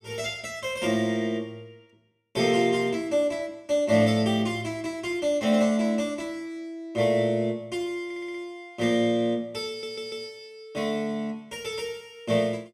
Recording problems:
stutter; at 8 s and at 9.5 s

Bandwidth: 14 kHz